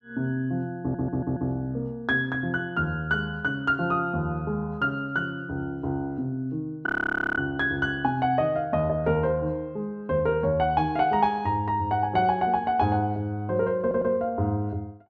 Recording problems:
audio stuttering; at 1 s and at 14 s
frozen audio; at 7 s for 0.5 s

